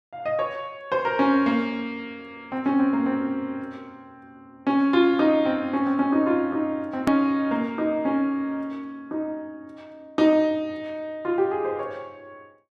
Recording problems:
edit click; at 7 s

